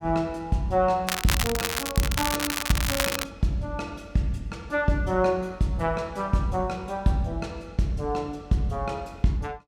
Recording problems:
crackling; from 1 to 3 s; loose cable, SNR 1 dB

